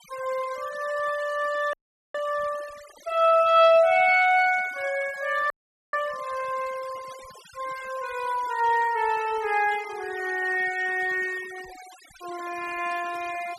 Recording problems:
noise reduction artefacts; signal-to-artefact ratio 20 dB
audio freezing; at 1.5 s and at 5.5 s

